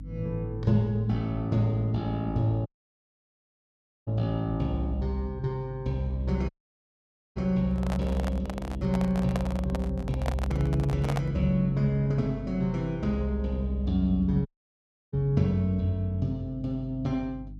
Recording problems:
hum; 50 Hz, harmonics up to 300 Hz, SNR 13 dB
audio cutting out; at 2.5 s for 1.5 s, at 6.5 s for 1 s and at 14 s for 0.5 s
microphone handling noise; from 7.5 to 11 s; peak -1 dB vs average level

